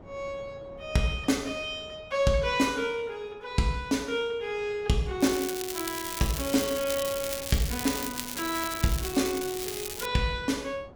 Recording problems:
wind on the microphone; below 580 Hz, SNR 20 dB
crackling; from 5 to 10 s; loose cable, SNR 5 dB

